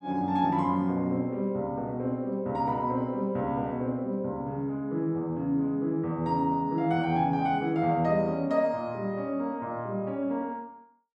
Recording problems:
none

